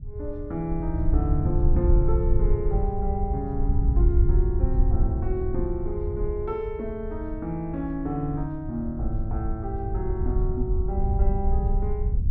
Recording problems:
low-frequency rumble; below 74 Hz, SNR -4 dB

